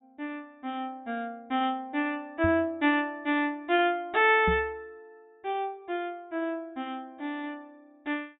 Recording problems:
low-pass filter; nothing above 4 kHz
microphone thump; at 2.5 s and at 4.5 s; peak +1 dB vs average level

